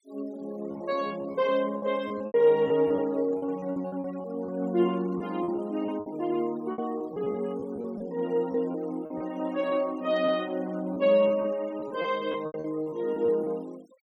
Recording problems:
noise reduction artefacts; signal-to-artefact ratio 24 dB
packet loss; 10% of the sound replaced, filled with repeated pitch periods

